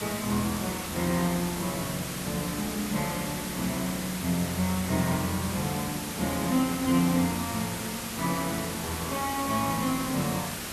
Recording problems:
mains hum; 60 Hz, harmonics up to 1.4 kHz, SNR 15 dB
hiss; slope -2 dB per octave, SNR 5 dB

